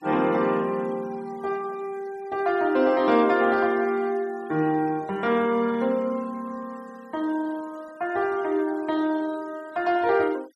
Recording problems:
denoising artefacts; signal-to-artefact ratio 25 dB

